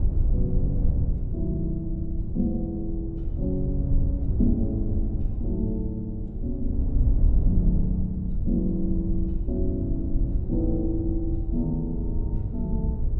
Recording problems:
low-frequency rumble; below 82 Hz, SNR -2 dB

